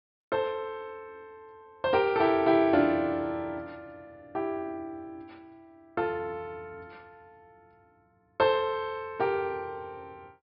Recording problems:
treble missing; nothing above 5 kHz

